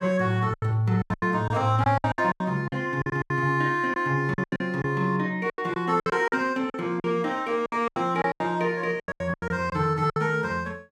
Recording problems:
lost packets; 16% of the sound replaced, filled with silence

